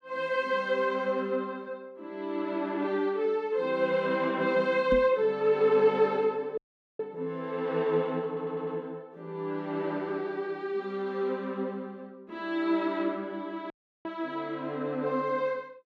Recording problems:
microphone thump; at 5 s; peak +1 dB vs average level
dropout; at 6.5 s and at 14 s
stutter; at 8.5 s

